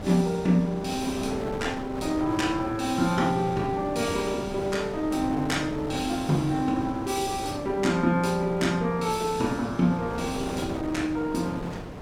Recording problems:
wind on the microphone; below 680 Hz, SNR 10 dB

